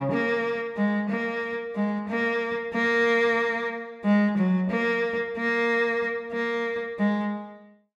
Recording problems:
none

